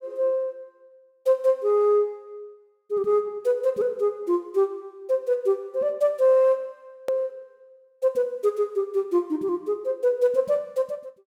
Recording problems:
edit click; at 7 s

